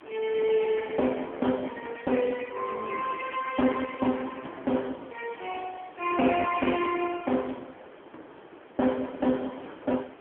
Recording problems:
phone line; 220 Hz to 3.3 kHz, AMR-NB
wind on the microphone; below 1.3 kHz, SNR 18 dB

